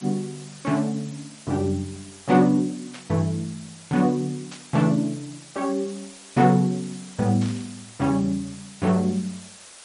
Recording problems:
codec artefacts; MP3, log-spectral distance 11 dB, nothing above 13.1 kHz
background hiss; slope 0 dB per octave, SNR 19 dB
static burst; at 3 s, at 4.5 s and at 7.5 s; peak -12 dB vs average level

